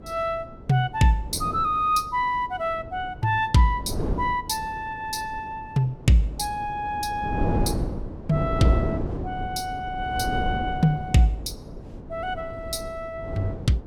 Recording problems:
wind on the microphone; below 340 Hz, SNR 7 dB

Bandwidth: 16.5 kHz